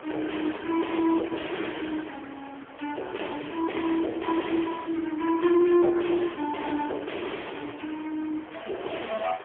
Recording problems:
telephone audio; 280 Hz to 3.3 kHz, AMR-NB, then MP3
distortion; soft clipping, signal-to-distortion ratio 9 dB
wind noise; below 1.9 kHz, SNR 19 dB

